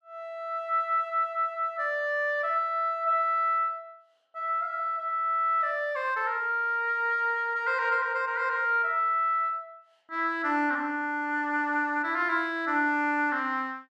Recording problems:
none

